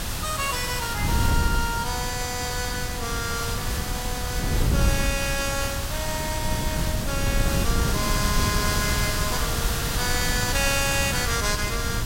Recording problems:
background hiss; slope -1 dB per octave, SNR 2 dB
wind on the microphone; below 160 Hz, SNR 1 dB

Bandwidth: 16 kHz